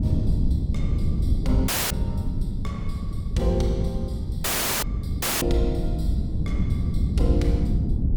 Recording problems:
rumble; below 66 Hz, SNR 9 dB
wind noise; below 160 Hz, SNR -1 dB
audio cutting out; at 1.5 s, at 4.5 s and at 5 s

